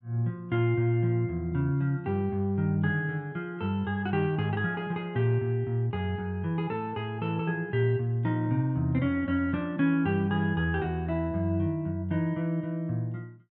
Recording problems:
none

